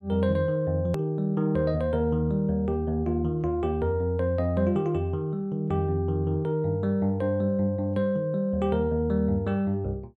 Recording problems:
hard cut with a click; at 1 s

